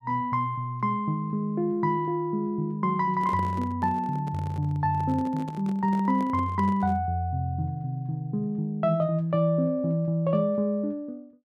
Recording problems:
microphone handling noise; from 3 to 7 s; peak -7 dB vs average level

